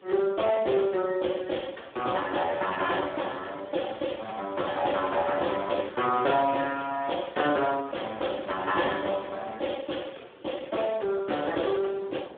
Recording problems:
telephone audio; 300 Hz to 3.5 kHz, Speex
background hiss; SNR 28 dB
wind noise; below 670 Hz, SNR 20 dB

